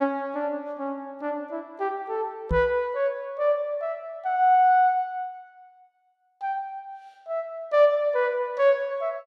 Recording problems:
microphone thump; at 2.5 s; peak 0 dB vs average level

